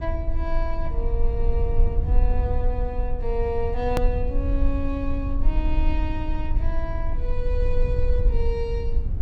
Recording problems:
low-frequency rumble; below 54 Hz, strongest tone 22 Hz, SNR -4 dB
edit click; at 4 s

